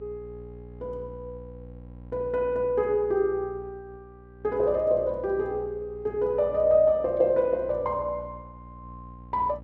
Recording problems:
hum; 60 Hz, harmonics up to 840 Hz, SNR 20 dB

